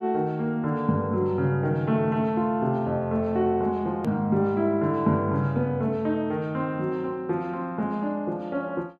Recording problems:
edit click; at 4 s

